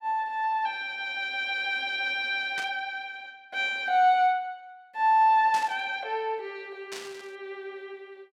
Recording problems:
static burst; at 2.5 s, at 5.5 s and at 7 s; peak -7 dB vs average level

